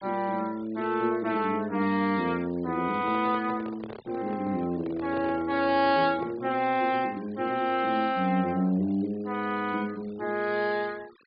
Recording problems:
low-pass filter; nothing above 4.7 kHz
denoising artefacts; signal-to-artefact ratio 23 dB
microphone handling noise; from 3 to 6.5 s; peak -8 dB vs average level

